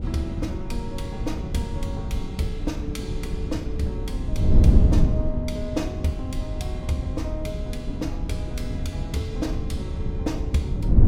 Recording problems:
wind noise; below 110 Hz, SNR -4 dB

